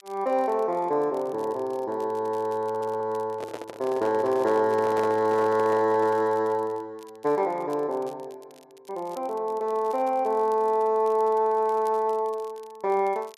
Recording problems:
crackle; vinyl, SNR 30 dB
stutter; at 2.5 s
microphone handling noise; from 3.5 to 6.5 s; peak -4 dB vs average level

